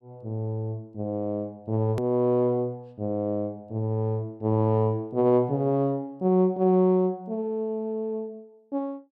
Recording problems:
hard cut with a click; at 2 s

